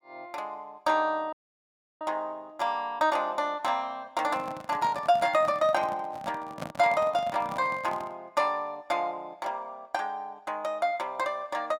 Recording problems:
dropout; at 1.5 s for 0.5 s
handling noise; from 4 to 8 s; peak -3 dB vs average level

